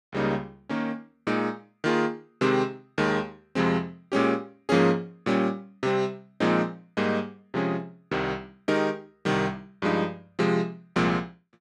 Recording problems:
none

